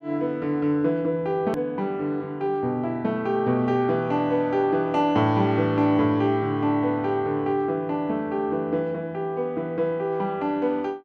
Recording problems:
hard cut with a click; at 1.5 s

